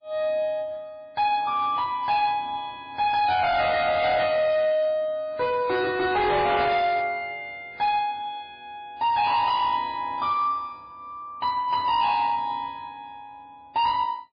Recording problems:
codec artefacts; MP3, log-spectral distance 2 dB, nothing above 4.6 kHz
distortion; hard clipping, signal-to-distortion ratio 10 dB

